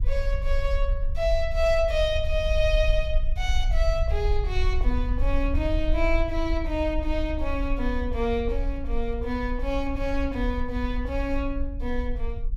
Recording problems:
low-frequency rumble; below 54 Hz, SNR 1 dB

